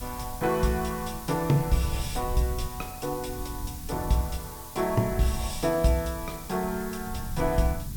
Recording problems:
background hiss; slope +2 dB per octave, SNR 13 dB
rumble; below 100 Hz, SNR 11 dB

